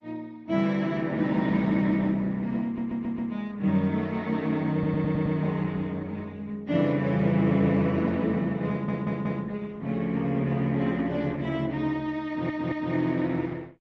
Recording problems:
lossy codec; MP3, then Opus, log-spectral distance 2 dB
stutter; 4 times, first at 2.5 s

